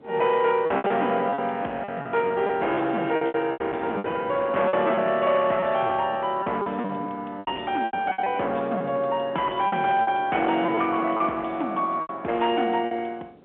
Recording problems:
telephone audio; 280 Hz to 3.4 kHz, G.711
distortion; hard clipping, signal-to-distortion ratio 13 dB
wind on the microphone; below 750 Hz, SNR 21 dB
packet loss; 11% of the sound replaced, filled with repeated pitch periods

